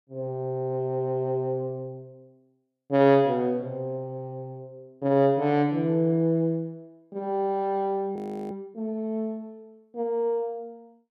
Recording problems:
audio freezing; at 8 s

